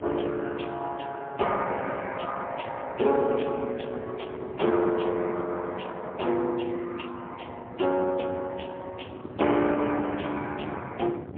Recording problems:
telephone audio; 260 Hz to 3.4 kHz, AMR-NB, then MP3
wind noise; below 480 Hz, SNR 14 dB

